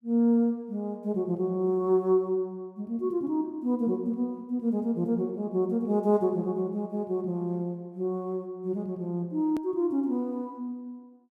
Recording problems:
hard cut with a click; at 9.5 s

